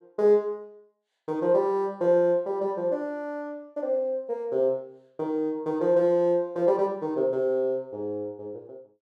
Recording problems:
none

